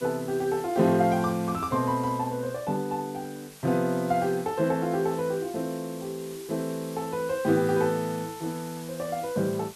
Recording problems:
background hiss; slope +1 dB per octave, SNR 18 dB

